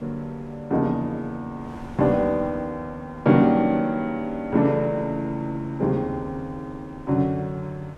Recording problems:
wind on the microphone; below 540 Hz, SNR 22 dB

